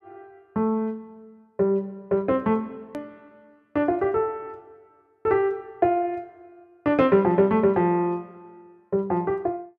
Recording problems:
click at an edit; at 3 s

